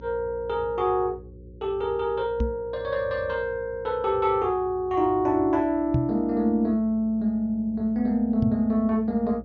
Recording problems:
treble missing; nothing above 6.7 kHz
hum; 60 Hz, harmonics up to 540 Hz, SNR 21 dB
microphone thump; at 2.5 s, at 6 s and at 8.5 s; peak +4 dB vs average level

